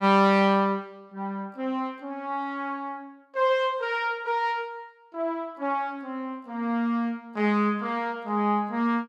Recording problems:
none

